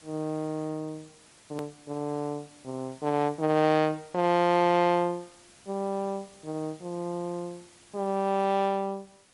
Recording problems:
lossy codec; MP3, log-spectral distance 7 dB, nothing above 13.1 kHz
hiss; slope -1 dB per octave, SNR 25 dB
hard cut with a click; at 1.5 s

